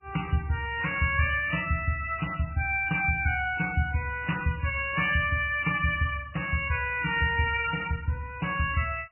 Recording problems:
lossy codec; MP3, log-spectral distance 5 dB, nothing above 2.4 kHz

